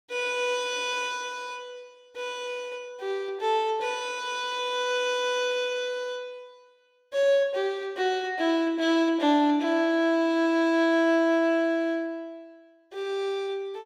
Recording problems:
none

